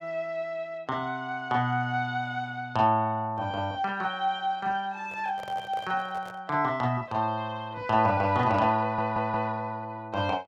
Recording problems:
microphone handling noise; from 5 to 6.5 s; peak -10 dB vs average level
stutter; at 9 s

